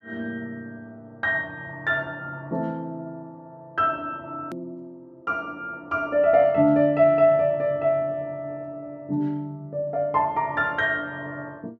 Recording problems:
click at an edit; at 4.5 s

